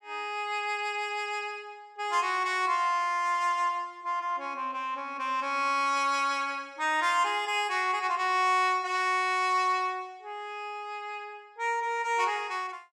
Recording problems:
none

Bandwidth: 14.5 kHz